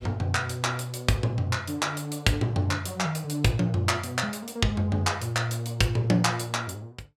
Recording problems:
none

